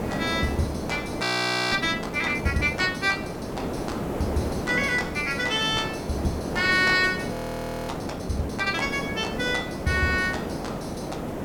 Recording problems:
background hiss; slope -10 dB per octave, SNR 6 dB
audio freezing; at 1 s and at 7.5 s for 0.5 s

